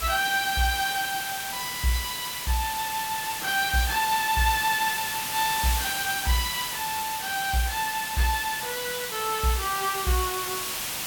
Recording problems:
background hiss; slope +1 dB per octave, SNR 3 dB

